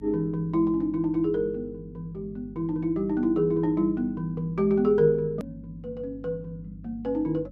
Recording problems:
hum; 50 Hz, harmonics up to 300 Hz, SNR 20 dB
click at an edit; at 5.5 s

